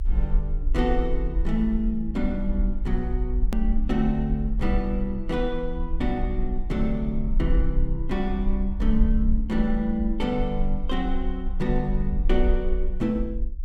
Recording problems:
rumble; below 48 Hz, strongest tone 20 Hz, SNR 2 dB
edit click; at 3.5 s

